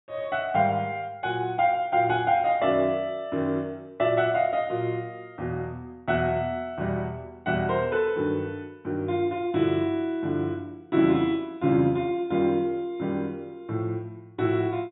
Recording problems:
treble missing; nothing above 4 kHz

